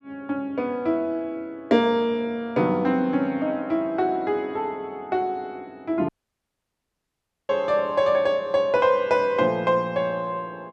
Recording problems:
dropout; at 6 s for 1.5 s

